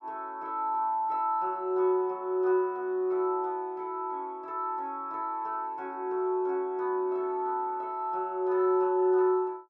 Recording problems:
none

